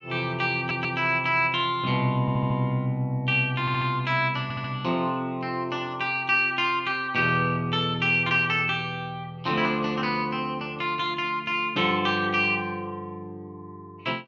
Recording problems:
stutter; 4 times, first at 0.5 s

